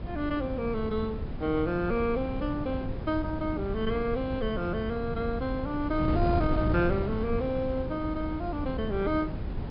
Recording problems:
low-pass filter; nothing above 5.5 kHz
wind on the microphone; below 200 Hz, SNR 4 dB

